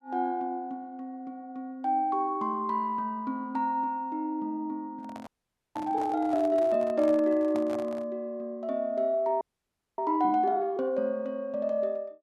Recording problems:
microphone handling noise; from 5 to 8 s; peak -6 dB vs average level
frozen audio; at 5.5 s and at 9.5 s for 0.5 s

